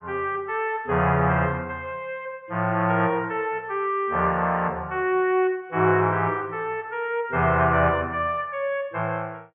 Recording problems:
low-pass filter; nothing above 3.4 kHz

